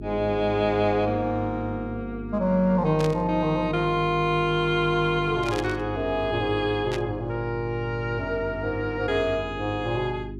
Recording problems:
hum; 50 Hz, harmonics up to 400 Hz, SNR 12 dB
burst of static; at 3 s, at 5.5 s and at 7 s; peak -5 dB vs average level

